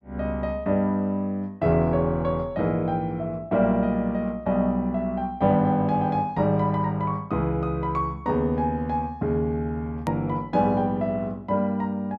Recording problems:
hard cut with a click; at 10 s

